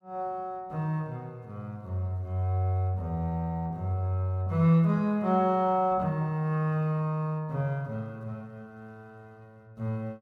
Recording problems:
none

